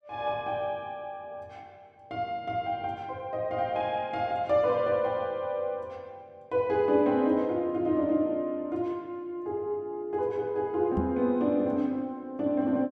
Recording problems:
microphone bump; at 11 s; peak +3 dB vs average level

